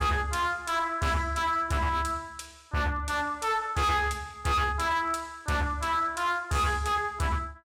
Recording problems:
distortion; hard clipping, signal-to-distortion ratio 8 dB

